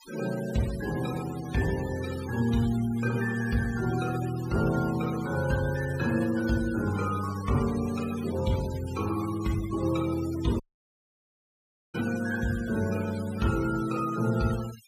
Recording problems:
denoising artefacts; signal-to-artefact ratio 15 dB
audio cutting out; at 11 s for 1.5 s

